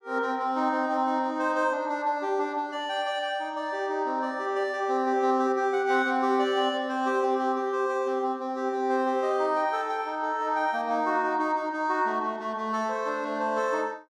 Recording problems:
none

